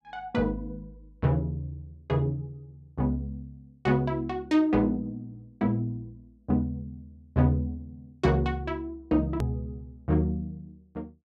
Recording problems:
hard cut with a click; at 9.5 s

